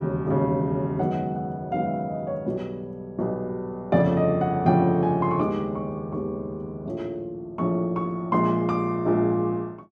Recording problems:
none

